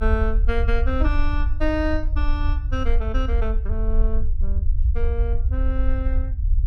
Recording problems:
rumble; below 60 Hz, SNR -5 dB

